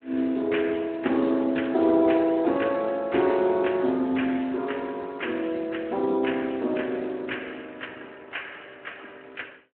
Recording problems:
telephone audio; 220 Hz to 3.2 kHz, Speex

